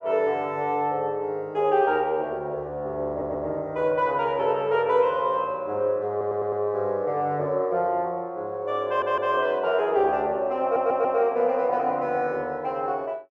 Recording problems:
stutter; 4 times, first at 3 s

